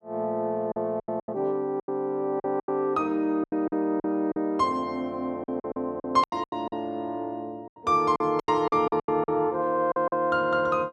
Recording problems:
lost packets; 13% of the sound replaced, filled with silence

